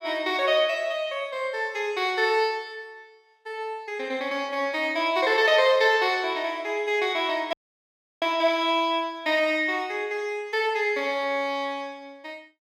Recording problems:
dropout; at 7.5 s for 0.5 s

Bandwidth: 17 kHz